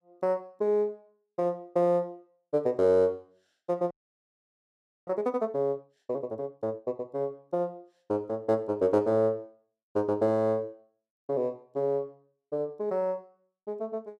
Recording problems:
frozen audio; at 4 s for 1 s

